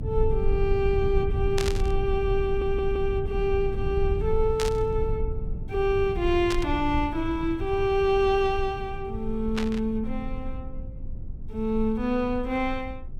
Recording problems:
rumble; below 80 Hz, strongest tone 20 Hz, SNR 6 dB
static burst; 4 times, first at 1.5 s; peak -1 dB vs average level
stutter; at 2.5 s

